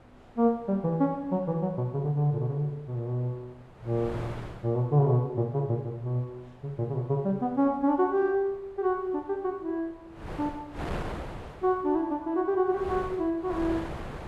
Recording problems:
wind noise; below 870 Hz, SNR 12 dB

